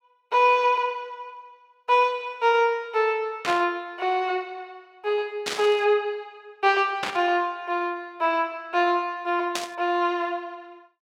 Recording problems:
burst of static; 4 times, first at 3.5 s; peak 0 dB vs average level

